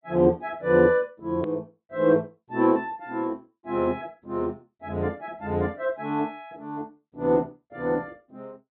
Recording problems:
treble missing; nothing above 4 kHz
edit click; at 1.5 s

